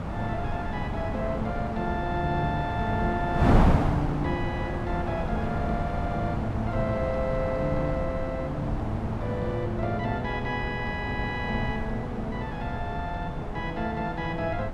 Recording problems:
wind on the microphone; below 520 Hz, SNR 0 dB

